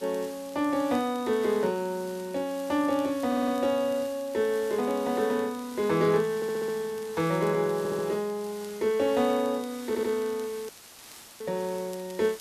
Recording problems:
background hiss; slope -1 dB per octave, SNR 19 dB
crackle; vinyl, SNR 27 dB
audio stuttering; 4 times, first at 3.5 s
audio cutting out; at 11 s for 0.5 s

